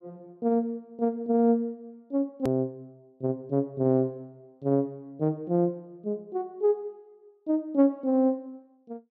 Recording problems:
edit click; at 2.5 s

